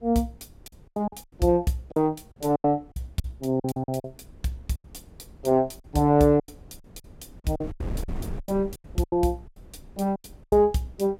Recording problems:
wind on the microphone; below 200 Hz, SNR 17 dB
packet loss; 15% of the sound replaced, filled with silence

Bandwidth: 16 kHz